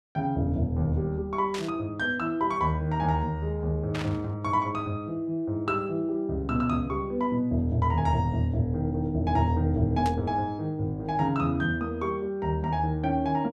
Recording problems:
static burst; at 1.5 s, at 4 s and at 10 s; peak -5 dB vs average level

